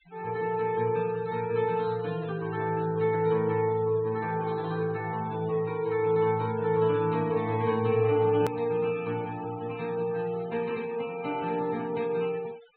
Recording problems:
low-pass filter; nothing above 4 kHz
denoising artefacts; signal-to-artefact ratio 19 dB
edit click; at 8.5 s

